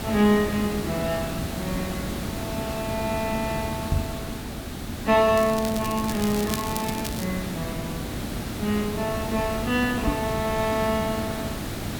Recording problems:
hiss; slope -4 dB per octave, SNR 5 dB
microphone thump; at 4 s and at 10 s; peak +5 dB vs average level
crackling; from 5.5 to 7.5 s; loose cable, SNR 10 dB

